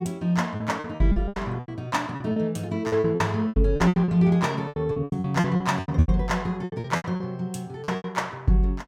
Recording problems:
packet loss; 19% of the sound replaced, filled with repeated pitch periods

